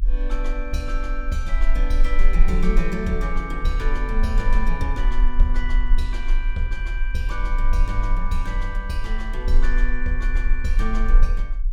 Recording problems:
low-frequency rumble; below 36 Hz, strongest tone 18 Hz, SNR -4 dB

